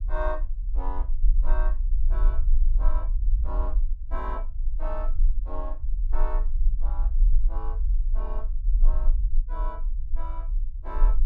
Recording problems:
rumble; below 40 Hz, strongest tone 22 Hz, SNR -12 dB

